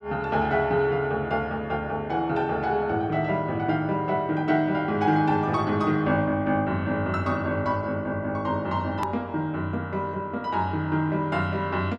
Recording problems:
click at an edit; at 9 s

